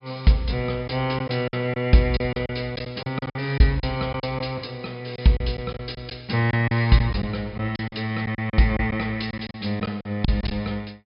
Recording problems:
low-pass filter; nothing above 5.5 kHz
lost packets; 9% of the sound replaced, filled with silence

